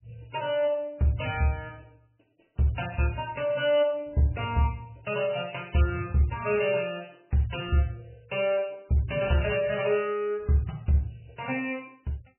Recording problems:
lossy compression; MP3, log-spectral distance 5 dB, nothing above 2.9 kHz

